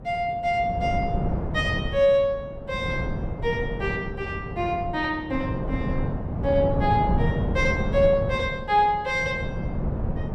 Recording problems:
wind on the microphone; below 240 Hz, SNR 4 dB

